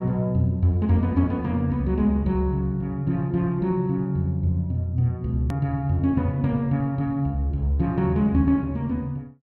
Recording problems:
hard cut with a click; at 5.5 s

